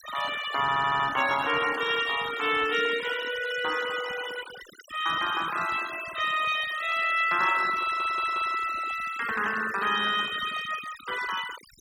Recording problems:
noise reduction artefacts; signal-to-artefact ratio 12 dB
stutter; at 0.5 s and at 8 s

